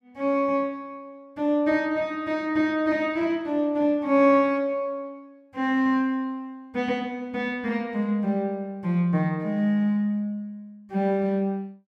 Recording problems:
none

